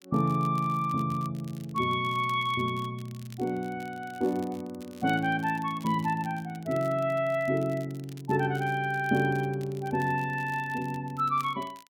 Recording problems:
crackle; vinyl, SNR 24 dB

